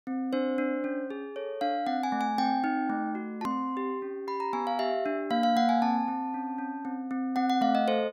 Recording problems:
edit click; at 3.5 s

